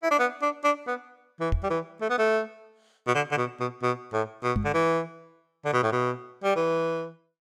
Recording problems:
microphone bump; at 1.5 s and at 4.5 s; peak +3 dB vs average level

